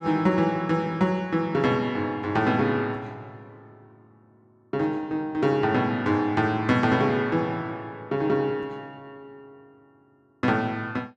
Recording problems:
none

